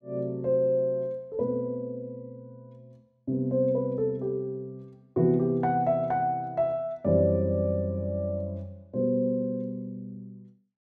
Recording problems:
none

